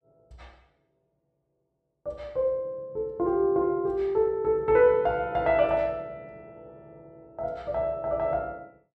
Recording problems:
none

